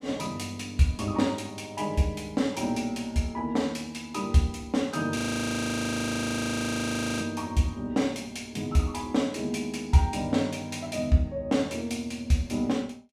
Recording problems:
audio freezing; at 5 s for 2 s

